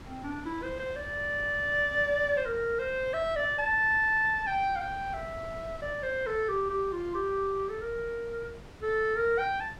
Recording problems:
wind noise; below 650 Hz, SNR 18 dB

